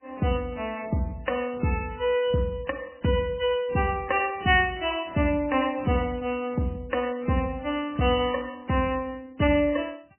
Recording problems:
lossy codec; MP3, log-spectral distance 3 dB, nothing above 2.7 kHz

